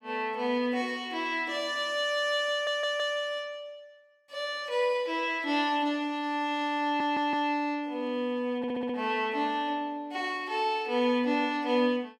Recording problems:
audio stuttering; at 2.5 s, at 7 s and at 8.5 s

